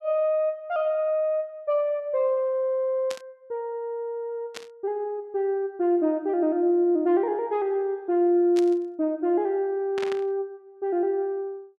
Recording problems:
burst of static; 4 times, first at 3 s; peak -6 dB vs average level

